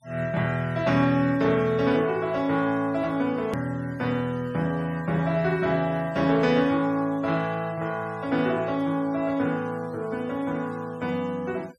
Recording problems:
noise reduction artefacts; signal-to-artefact ratio 25 dB
edit click; at 3.5 s

